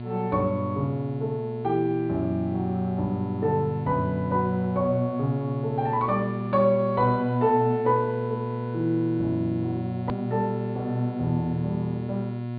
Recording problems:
treble cut off; nothing above 4.7 kHz
hum; 60 Hz, harmonics up to 1.1 kHz, SNR 7 dB
hard cut with a click; at 10 s

